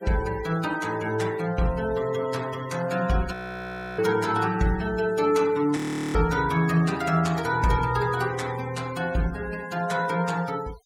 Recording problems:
noise reduction artefacts; signal-to-artefact ratio 19 dB
frozen audio; at 3.5 s for 0.5 s and at 6 s

